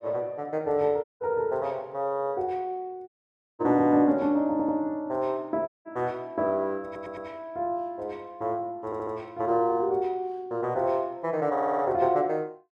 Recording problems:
dropout; at 1 s, at 3 s for 0.5 s and at 5.5 s
stutter; 4 times, first at 4.5 s

